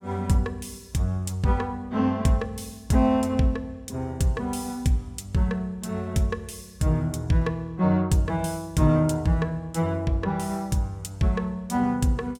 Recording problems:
none

